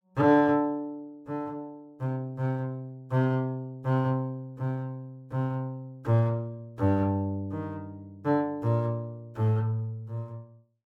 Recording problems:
none

